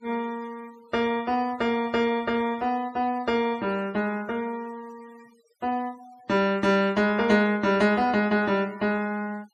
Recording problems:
noise reduction artefacts; signal-to-artefact ratio 23 dB

